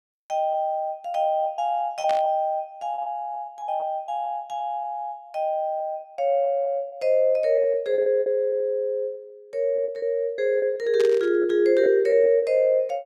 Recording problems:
lost packets; 10% of the sound replaced, filled with repeated pitch periods
static burst; at 2 s and at 11 s; peak -7 dB vs average level

